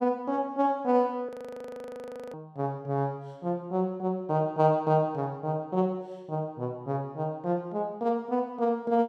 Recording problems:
frozen audio; at 1.5 s for 1 s

